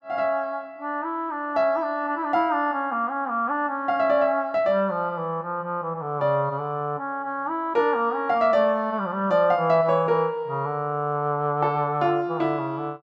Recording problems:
none

